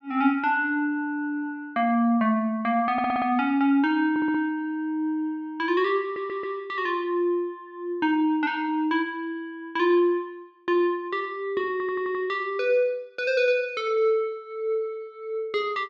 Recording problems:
audio stuttering; 4 times, first at 3 s

